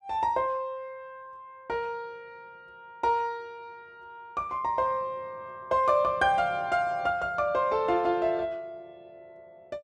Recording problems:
none

